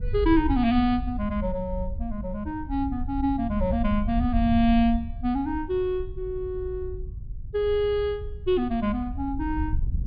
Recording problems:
treble cut off; nothing above 4.9 kHz
wind noise; below 78 Hz, SNR 8 dB

